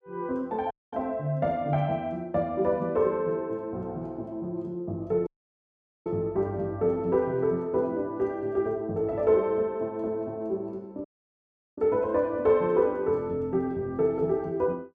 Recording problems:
dropout; at 0.5 s, at 5.5 s for 1 s and at 11 s for 0.5 s

